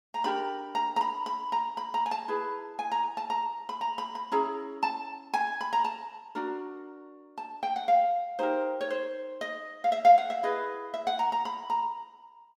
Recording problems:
none

